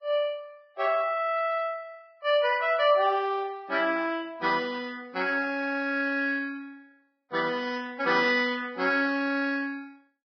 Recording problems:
lossy codec; Vorbis, log-spectral distance 3 dB, nothing above 5.2 kHz

